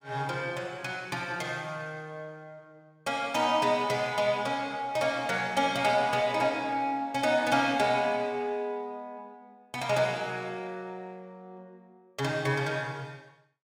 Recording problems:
none

